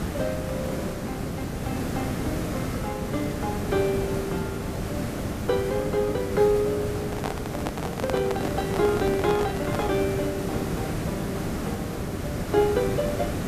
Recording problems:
hiss; slope -7 dB per octave, SNR 2 dB
microphone handling noise; from 7 to 10 s; peak +2 dB vs average level

